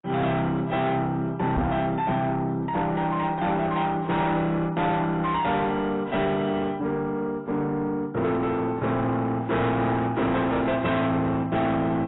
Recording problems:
codec artefacts; AAC, log-spectral distance 2 dB, nothing above 3.8 kHz
distortion; soft clipping, signal-to-distortion ratio 8 dB
microphone thump; at 1.5 s; peak +2 dB vs average level

